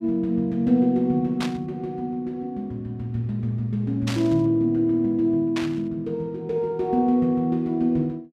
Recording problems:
static burst; at 1.5 s, at 4 s and at 5.5 s; peak -3 dB vs average level

